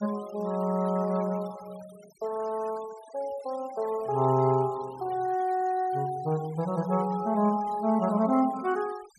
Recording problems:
denoising artefacts; signal-to-artefact ratio 22 dB

